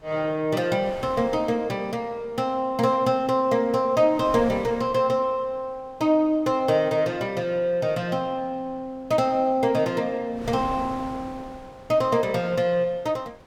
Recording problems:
wind on the microphone; below 990 Hz, SNR 21 dB

